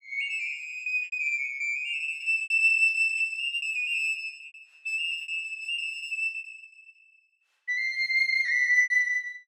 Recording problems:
packet loss; 14% of the sound replaced, filled with repeated pitch periods

